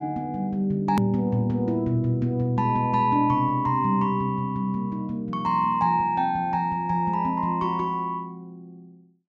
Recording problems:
treble cut off; nothing above 8 kHz
edit click; at 1 s

